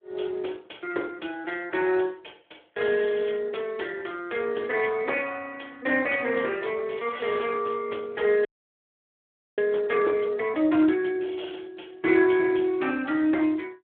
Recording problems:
telephone audio; 280 Hz to 3.4 kHz, Speex
frozen audio; at 8.5 s for 1 s

